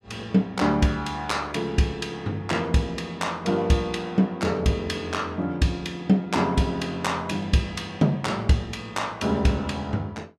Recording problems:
none

